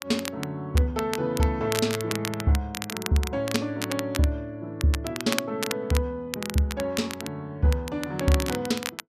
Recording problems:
crackle; vinyl, SNR 7 dB

